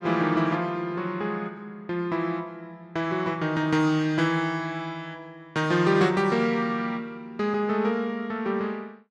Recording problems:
none

